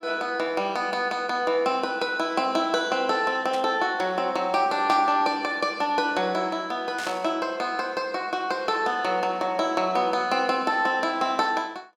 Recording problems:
static burst; at 3.5 s, at 5 s and at 7 s; peak -7 dB vs average level

